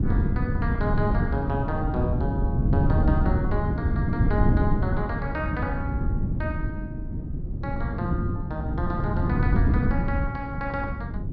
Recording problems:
wind noise; below 180 Hz, SNR -5 dB

